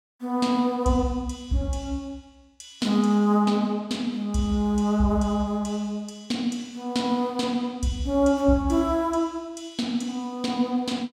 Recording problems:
none

